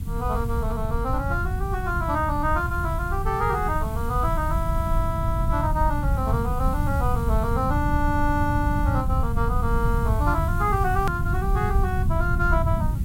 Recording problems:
hiss; slope -1 dB per octave, SNR 20 dB
low-frequency rumble; below 110 Hz, SNR 0 dB
hard cut with a click; at 11 s

